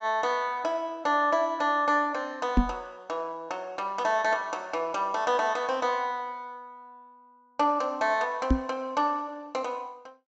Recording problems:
treble missing; nothing above 7.7 kHz
microphone bump; at 2.5 s and at 8.5 s; peak +9 dB vs average level

